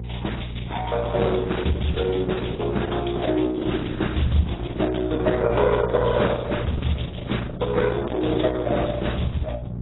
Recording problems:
codec artefacts; Opus, then AAC, log-spectral distance 5 dB, nothing above 3.8 kHz
hum; 60 Hz, harmonics up to 600 Hz, SNR 6 dB

